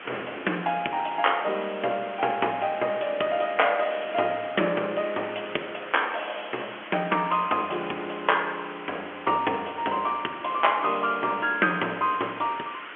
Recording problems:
telephone audio; 260 Hz to 3.2 kHz, G.711
hiss; SNR 13 dB
wind on the microphone; below 760 Hz, SNR 21 dB

